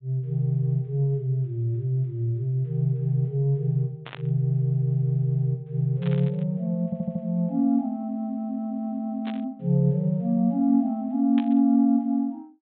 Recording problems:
treble cut off; nothing above 4 kHz
static burst; 4 times, first at 4 s; peak -9 dB vs average level
stutter; at 7 s

